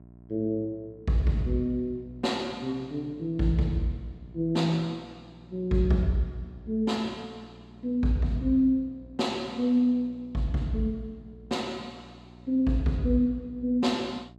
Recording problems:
hum; 60 Hz, harmonics up to 720 Hz, SNR 23 dB

